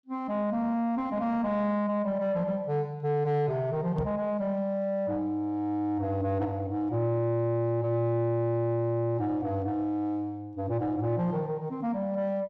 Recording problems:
distorted audio; soft clipping, signal-to-distortion ratio 12 dB
microphone bump; at 4 s; peak 0 dB vs average level

